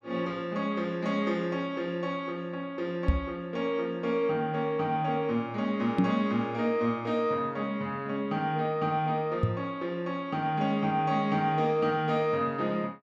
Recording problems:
microphone thump; at 3 s, at 6 s and at 9.5 s; peak +8 dB vs average level

